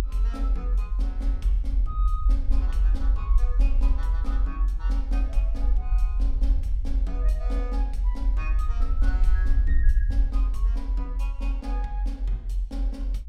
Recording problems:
low-frequency rumble; below 48 Hz, strongest tone 42 Hz, SNR -14 dB

